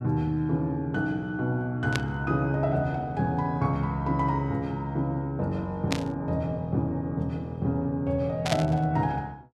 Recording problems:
burst of static; at 2 s, at 6 s and at 8.5 s; peak +2 dB vs average level

